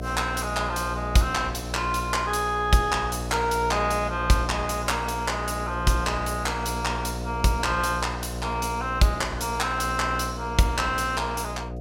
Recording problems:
hum; 60 Hz, harmonics up to 720 Hz, SNR 8 dB

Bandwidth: 16.5 kHz